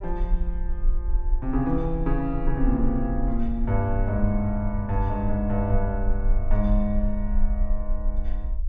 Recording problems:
low-frequency rumble; below 44 Hz, SNR 2 dB

